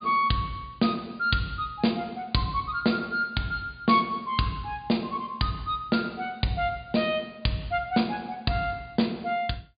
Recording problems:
low-pass filter; nothing above 4.8 kHz

